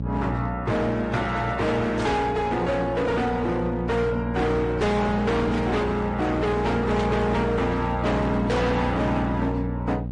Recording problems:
lossy compression; AAC, then MP3, log-spectral distance 2 dB, nothing above 8.5 kHz
distorted audio; hard clipping, signal-to-distortion ratio 6 dB
hum; 60 Hz, harmonics up to 540 Hz, SNR 7 dB
static burst; at 2 s, at 5.5 s and at 7 s; peak -9 dB vs average level

